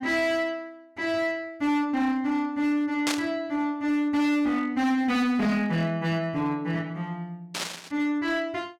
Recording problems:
distorted audio; hard clipping, signal-to-distortion ratio 11 dB
burst of static; at 3 s and at 7.5 s; peak +3 dB vs average level

